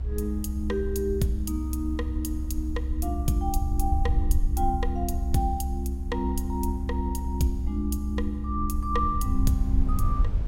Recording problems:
low-frequency rumble; below 66 Hz, SNR 0 dB
wind on the microphone; below 220 Hz, SNR 18 dB

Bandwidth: 16.5 kHz